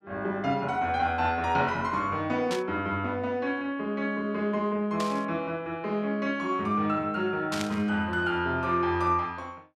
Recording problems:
static burst; at 2.5 s, at 5 s and at 7.5 s; peak -1 dB vs average level

